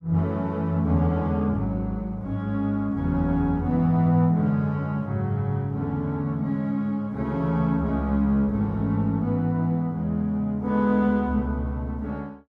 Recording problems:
none

